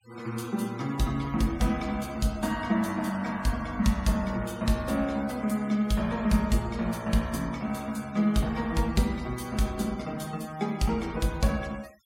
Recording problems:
denoising artefacts; signal-to-artefact ratio 22 dB

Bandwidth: 16.5 kHz